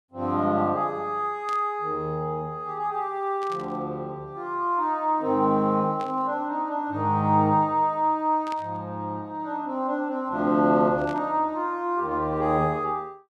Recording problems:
burst of static; 5 times, first at 1.5 s; peak -11 dB vs average level

